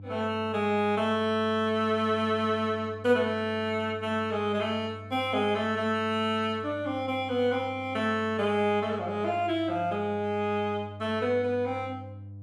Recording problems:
hum; 50 Hz, harmonics up to 500 Hz, SNR 16 dB

